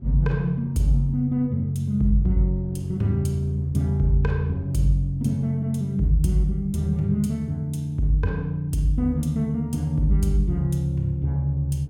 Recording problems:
wind noise; below 280 Hz, SNR 24 dB

